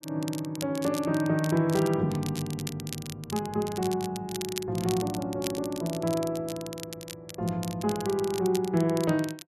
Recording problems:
crackle; vinyl, SNR 12 dB

